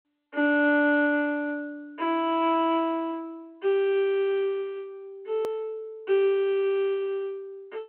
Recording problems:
telephone audio; 220 Hz to 3.2 kHz, G.726
click at an edit; at 5.5 s

